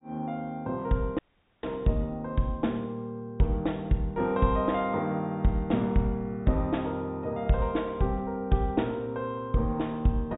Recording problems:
treble missing; nothing above 4 kHz
audio cutting out; at 1 s

